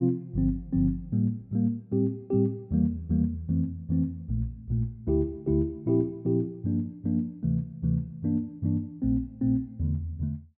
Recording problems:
none

